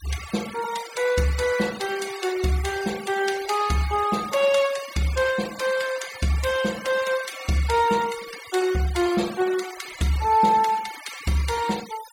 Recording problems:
noise reduction artefacts; signal-to-artefact ratio 14 dB

